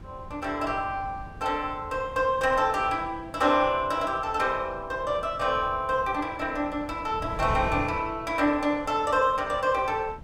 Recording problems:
wind noise; below 190 Hz, SNR 16 dB

